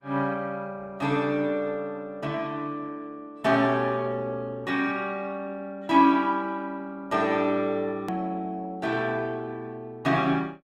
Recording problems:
codec artefacts; Opus, log-spectral distance 2 dB, nothing above 17.1 kHz
hard cut with a click; at 8 s

